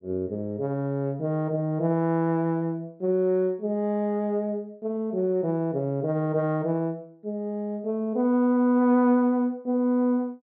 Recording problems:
low-pass filter; nothing above 6.5 kHz

